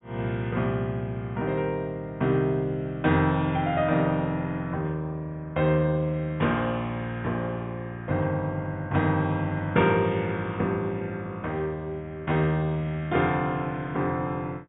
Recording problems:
low-pass filter; nothing above 3.8 kHz

